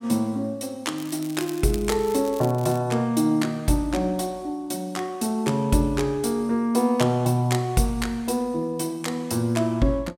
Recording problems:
crackle; from 1 to 3 s; loose cable, SNR 18 dB

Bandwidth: 16.5 kHz